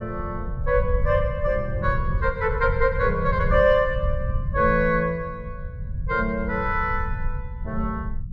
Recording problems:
rumble; below 90 Hz, SNR 6 dB

